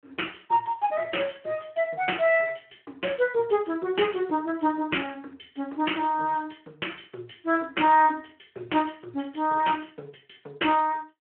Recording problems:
phone line; 280 Hz to 3.1 kHz, Speex

